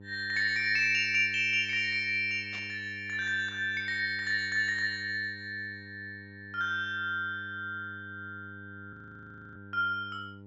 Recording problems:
low-pass filter; nothing above 8 kHz
hum; 50 Hz, harmonics up to 900 Hz, SNR 20 dB
static burst; at 2.5 s; peak -13 dB vs average level
frozen audio; at 9 s for 0.5 s

